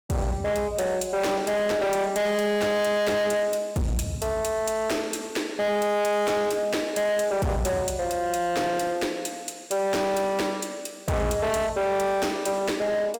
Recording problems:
distorted audio; hard clipping, signal-to-distortion ratio 6 dB

